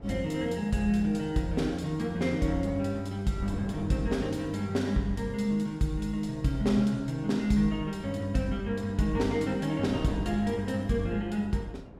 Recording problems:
wind noise; below 410 Hz, SNR 17 dB

